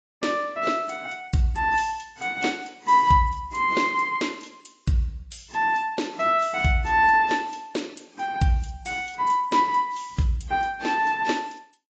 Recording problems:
lossy codec; AAC, log-spectral distance 4 dB, nothing above 7.6 kHz

